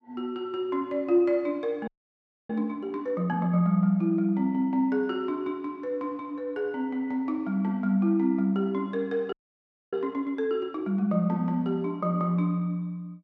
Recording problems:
audio freezing; at 2 s for 0.5 s and at 9.5 s for 0.5 s

